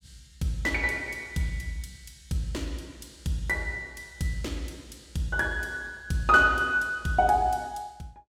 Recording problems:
none

